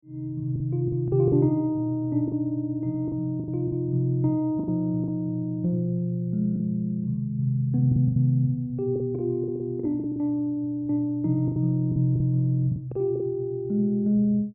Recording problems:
packet loss; 8% of the sound replaced, filled with the last packet

